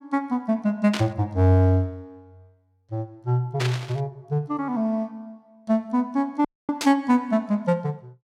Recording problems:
burst of static; at 1 s, at 3.5 s and at 7 s; peak 0 dB vs average level
audio cutting out; at 6.5 s

